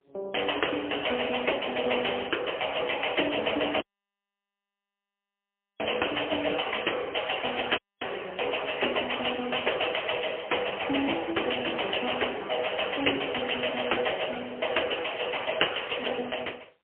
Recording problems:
phone line; 300 Hz to 3.2 kHz, AMR-NB, then MP3
audio cutting out; at 4 s for 2 s and at 8 s

